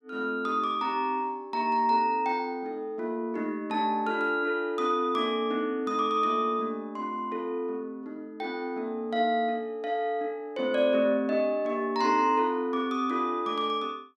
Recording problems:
none

